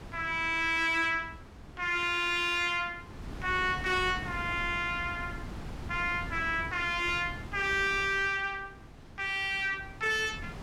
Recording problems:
distortion; soft clipping, signal-to-distortion ratio 6 dB
wind on the microphone; below 380 Hz, SNR 15 dB

